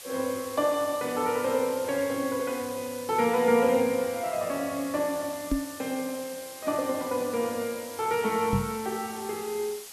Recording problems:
hiss; slope +1 dB per octave, SNR 13 dB
microphone bump; at 5.5 s and at 8.5 s; peak +5 dB vs average level

